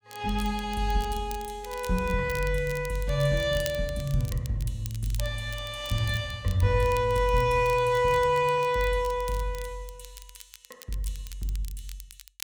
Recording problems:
crackling; vinyl, SNR 18 dB

